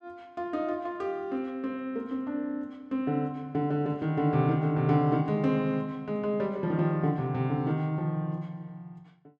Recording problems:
none

